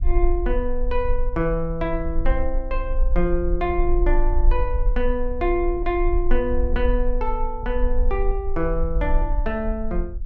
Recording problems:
rumble; below 42 Hz, strongest tone 22 Hz, SNR 1 dB

